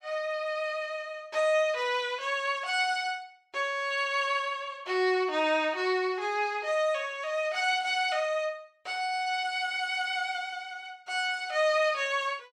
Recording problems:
none

